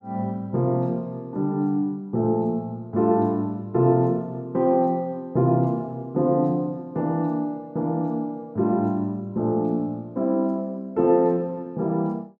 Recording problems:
none

